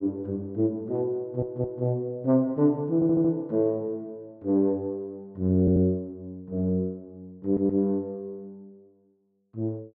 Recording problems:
stutter; 4 times, first at 1 s

